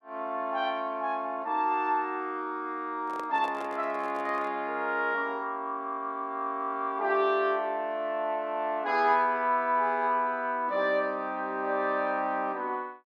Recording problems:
microphone handling noise; from 3 to 4.5 s; peak -8 dB vs average level

